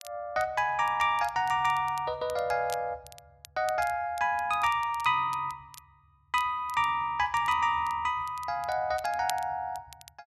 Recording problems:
crackle; vinyl, SNR 21 dB

